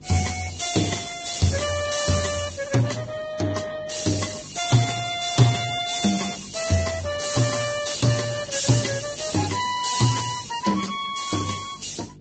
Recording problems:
lossy compression; Speex, then Vorbis, log-spectral distance 11 dB, nothing above 7.8 kHz
hum; 50 Hz, harmonics up to 500 Hz, SNR 22 dB

